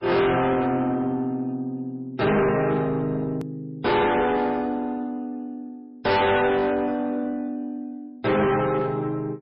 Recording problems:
codec artefacts; MP3, log-spectral distance 2 dB, nothing above 5 kHz
distortion; soft clipping, signal-to-distortion ratio 6 dB
edit click; at 3.5 s

